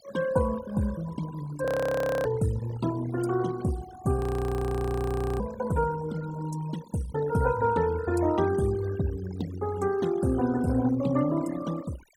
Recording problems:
denoising artefacts; signal-to-artefact ratio 16 dB
frozen audio; at 1.5 s for 0.5 s and at 4 s for 1 s

